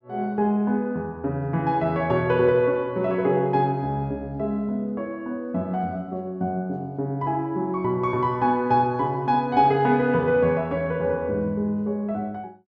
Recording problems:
none

